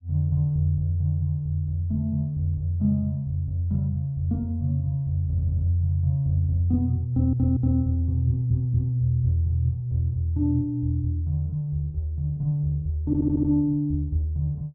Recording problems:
audio stuttering; 4 times, first at 5.5 s

